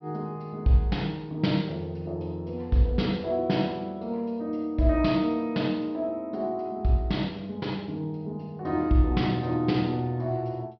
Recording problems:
low-pass filter; nothing above 5.5 kHz

